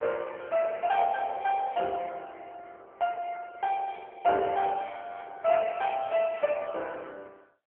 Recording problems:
telephone audio; 340 Hz to 2.1 kHz, AMR-NB

